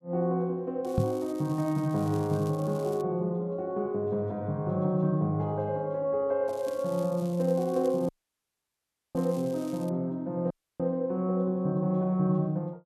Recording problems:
crackling; from 1 to 3 s and from 6.5 to 10 s; loose cable, SNR 23 dB
microphone bump; at 1 s; peak +6 dB vs average level
audio cutting out; at 8 s for 1 s and at 11 s

